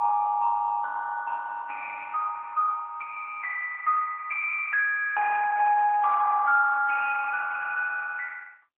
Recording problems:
phone line; 260 Hz to 2.3 kHz, AMR-NB, then MP3

